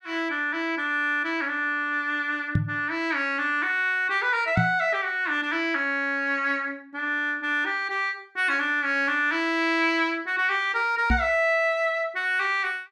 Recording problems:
knock on the microphone; at 2.5 s, at 4.5 s and at 11 s; peak +5 dB vs average level

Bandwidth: 13.5 kHz